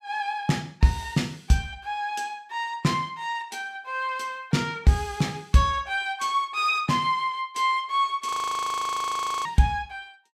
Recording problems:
frozen audio; at 8.5 s for 1 s

